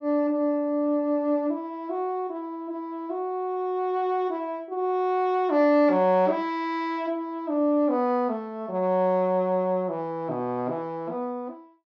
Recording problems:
none

